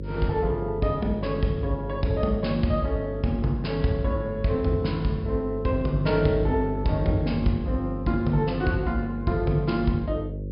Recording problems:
low-pass filter; nothing above 5.5 kHz
hum; 50 Hz, harmonics up to 550 Hz, SNR 8 dB

